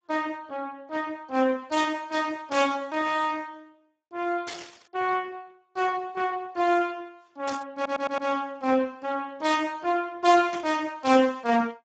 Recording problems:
lossy codec; Speex, log-spectral distance 4 dB, nothing above 7.6 kHz
burst of static; 4 times, first at 2.5 s; peak -5 dB vs average level
audio stuttering; at 8 s

